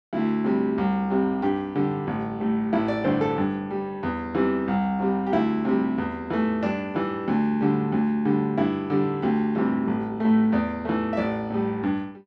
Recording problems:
none

